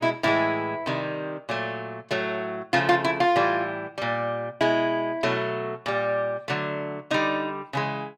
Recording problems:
none

